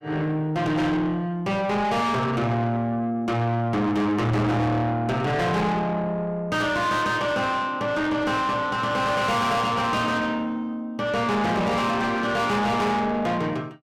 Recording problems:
distorted audio; soft clipping, signal-to-distortion ratio 7 dB

